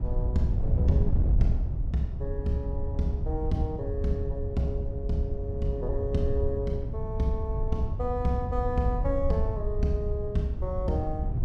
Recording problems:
wind on the microphone; below 94 Hz, SNR 0 dB

